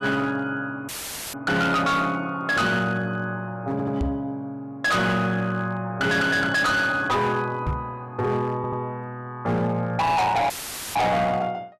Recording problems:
distortion; hard clipping, signal-to-distortion ratio 7 dB
audio cutting out; at 1 s and at 11 s; filled with static
audio stuttering; at 3.5 s and at 8.5 s
knock on the microphone; at 4 s and at 7.5 s; peak +1 dB vs average level

